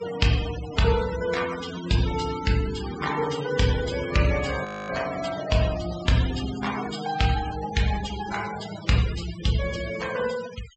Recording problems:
low-pass filter; nothing above 8 kHz
noise reduction artefacts; signal-to-artefact ratio 11 dB
frozen audio; at 4.5 s

